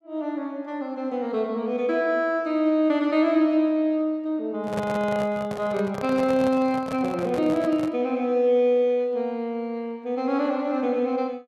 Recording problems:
microphone handling noise; from 4.5 to 8 s; peak -2 dB vs average level

